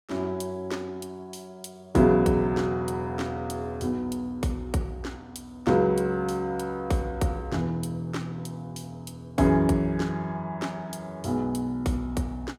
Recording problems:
none

